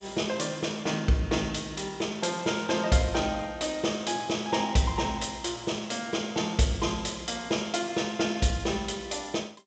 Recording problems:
codec artefacts; G.722, log-spectral distance 4 dB, nothing above 7.6 kHz

